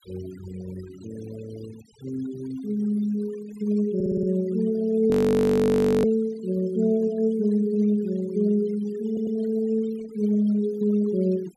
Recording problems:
noise reduction artefacts; signal-to-artefact ratio 23 dB
audio stuttering; at 4 s and at 9 s
frozen audio; at 5 s for 1 s

